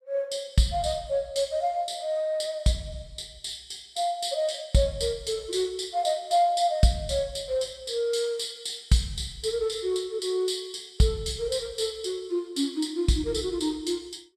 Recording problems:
none

